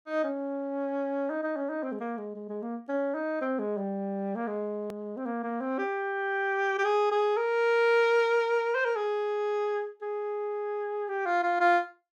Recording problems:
edit click; at 5 s

